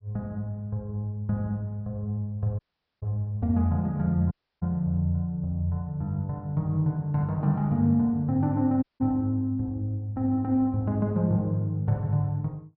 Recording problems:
treble cut off; nothing above 5.5 kHz
audio cutting out; at 2.5 s, at 4.5 s and at 9 s

